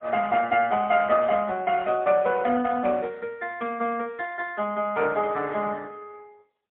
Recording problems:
phone line; 190 Hz to 3.3 kHz, AMR-NB, then MP3

